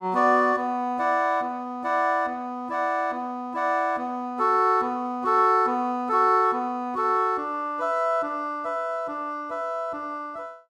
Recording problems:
none

